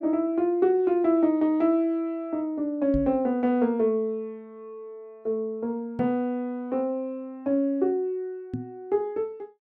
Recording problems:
microphone thump; at 3 s, at 6 s and at 8.5 s; peak -2 dB vs average level

